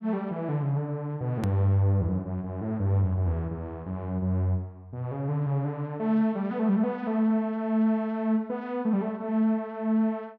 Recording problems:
hard cut with a click; at 1.5 s

